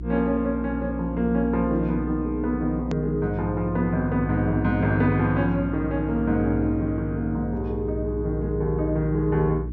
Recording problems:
low-pass filter; nothing above 8 kHz
hum; 60 Hz, harmonics up to 360 Hz, SNR 9 dB
click at an edit; at 3 s

